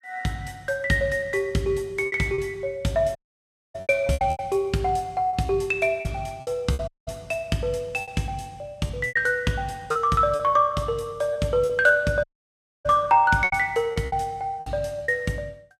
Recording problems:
packet loss; 8% of the sound replaced, filled with repeated pitch periods
dropout; at 3 s for 0.5 s, at 7 s and at 12 s for 0.5 s

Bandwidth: 15.5 kHz